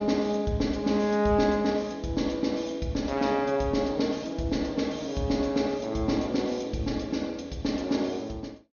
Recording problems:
treble missing; nothing above 6.7 kHz

